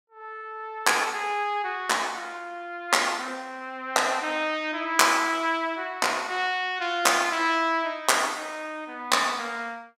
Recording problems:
none

